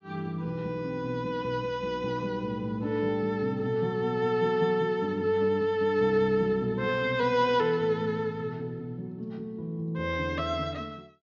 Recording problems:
low-pass filter; nothing above 6.9 kHz

